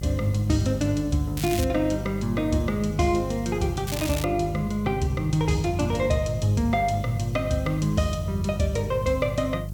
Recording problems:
hum; 50 Hz, harmonics up to 350 Hz, SNR 8 dB
background hiss; SNR 27 dB
crackling; at 1.5 s and at 4 s; loose cable, SNR 10 dB

